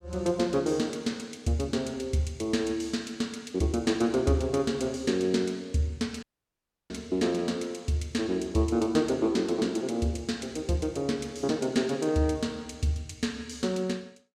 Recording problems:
dropout; at 6 s for 0.5 s

